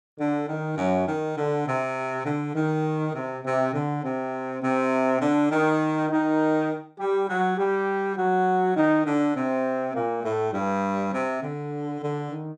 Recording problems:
none

